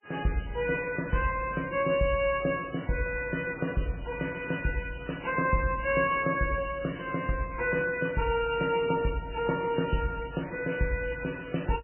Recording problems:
lossy compression; MP3, log-spectral distance 8 dB, nothing above 2.4 kHz

